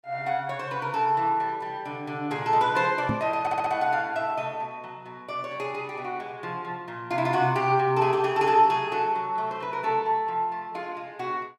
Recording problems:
knock on the microphone; at 3 s; peak +1 dB vs average level
audio stuttering; at 3.5 s

